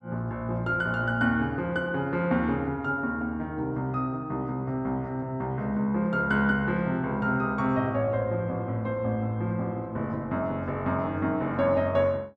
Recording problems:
none

